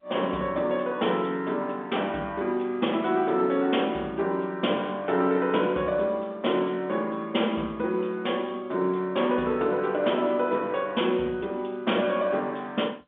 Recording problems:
telephone audio; 220 Hz to 3.6 kHz, G.711

